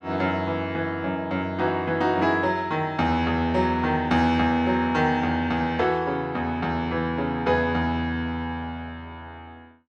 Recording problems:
none

